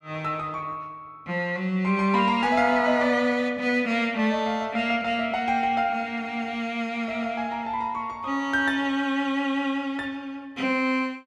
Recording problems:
none

